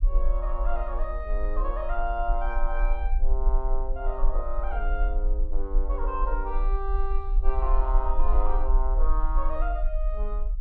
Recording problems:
low-frequency rumble; below 38 Hz, strongest tone 18 Hz, SNR -5 dB

